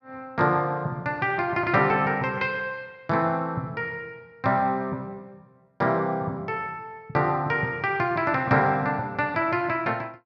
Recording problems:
none

